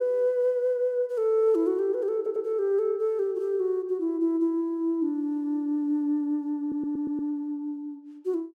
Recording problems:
stutter; at 2 s and at 6.5 s

